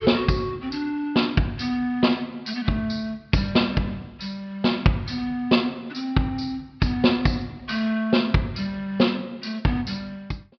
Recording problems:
treble cut off; nothing above 5.5 kHz

